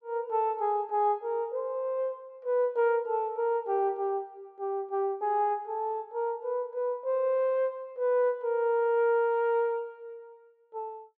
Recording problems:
none

